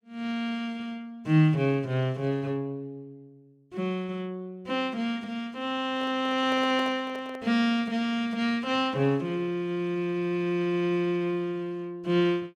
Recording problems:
handling noise; from 6 to 7.5 s; peak -7 dB vs average level

